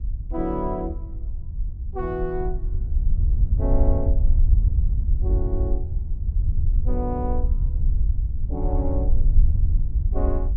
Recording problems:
wind on the microphone; below 68 Hz, SNR -6 dB

